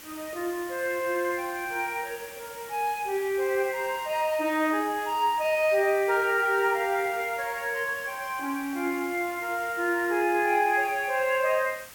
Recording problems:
hiss; slope -1 dB per octave, SNR 17 dB

